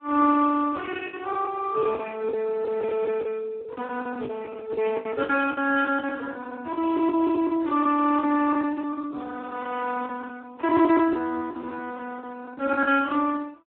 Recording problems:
phone line; 240 Hz to 2.6 kHz, Speex
lost packets; 17% of the sound replaced, filled with the last packet

